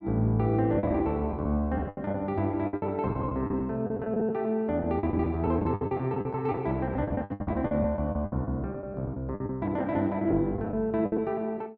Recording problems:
lost packets; 15% of the sound replaced, filled with the last packet

